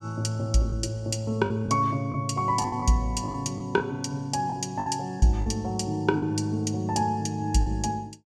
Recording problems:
lost packets; 6% of the sound replaced, filled with the last packet

